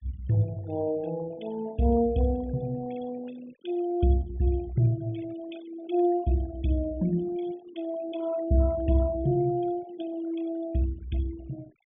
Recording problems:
treble cut off; nothing above 3.6 kHz
denoising artefacts; signal-to-artefact ratio 20 dB

